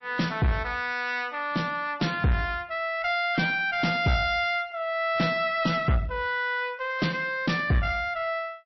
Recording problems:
lossy codec; MP3, log-spectral distance 3 dB, nothing above 5.7 kHz
distortion; soft clipping, signal-to-distortion ratio 10 dB

